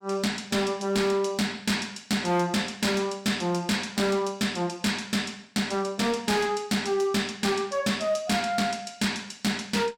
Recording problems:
distorted audio; hard clipping, uneven, signal-to-distortion ratio 11 dB

